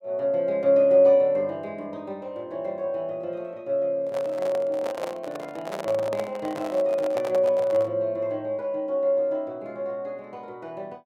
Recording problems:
handling noise; from 4 to 8 s; peak -3 dB vs average level

